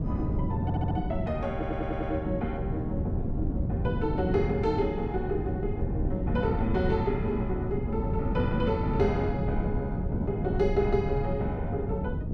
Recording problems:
wind on the microphone; below 210 Hz, SNR 0 dB
stutter; at 0.5 s and at 1.5 s

